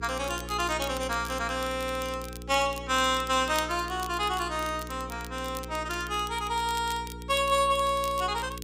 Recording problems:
hum; 60 Hz, harmonics up to 480 Hz, SNR 13 dB
crackle; vinyl, SNR 16 dB

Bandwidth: 15.5 kHz